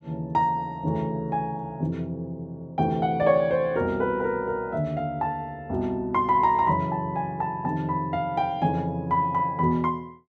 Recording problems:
none

